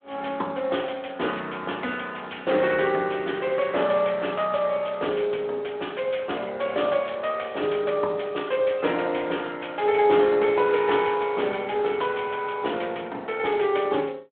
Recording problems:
telephone audio; 220 Hz to 3.6 kHz, Speex

